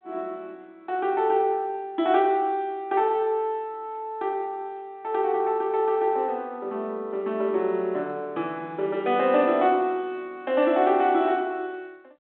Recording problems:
phone line; 260 Hz to 3.8 kHz, G.726

